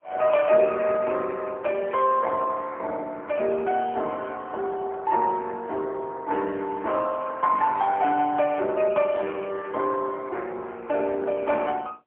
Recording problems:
phone line; 320 Hz to 3.6 kHz, AMR-NB, then MP3

